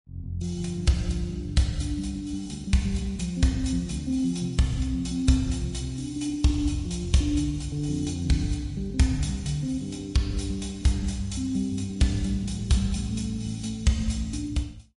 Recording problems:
codec artefacts; MP3, log-spectral distance 3 dB, nothing above 10.1 kHz

